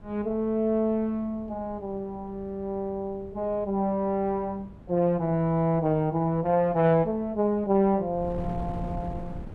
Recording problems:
wind noise; below 210 Hz, SNR 17 dB

